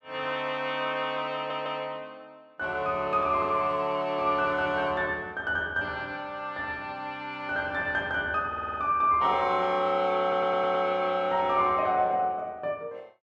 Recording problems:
audio stuttering; at 1.5 s, at 8.5 s and at 10 s

